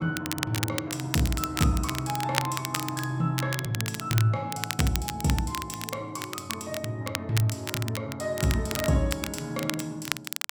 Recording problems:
crackling; vinyl, SNR 5 dB

